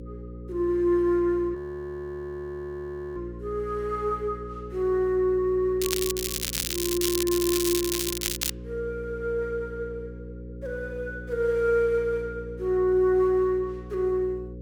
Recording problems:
electrical hum; 60 Hz, harmonics up to 540 Hz, SNR 13 dB
audio freezing; at 1.5 s for 1.5 s
crackle; from 6 to 8.5 s; loose cable, SNR 1 dB

